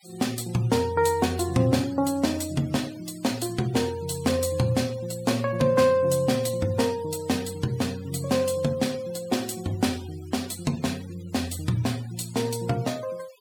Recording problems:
denoising artefacts; signal-to-artefact ratio 19 dB

